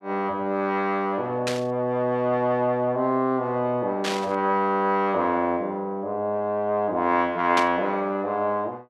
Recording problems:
static burst; at 1.5 s, at 4 s and at 7.5 s; peak +1 dB vs average level

